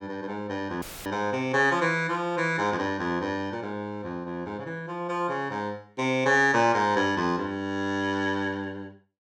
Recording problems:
dropout; at 1 s; filled with static

